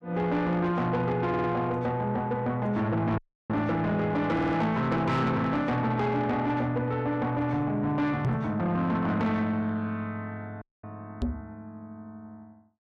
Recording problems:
distorted audio; soft clipping, signal-to-distortion ratio 10 dB
stutter; at 1.5 s and at 4.5 s
dropout; at 3 s and at 11 s
knock on the microphone; at 8.5 s and at 11 s; peak +2 dB vs average level

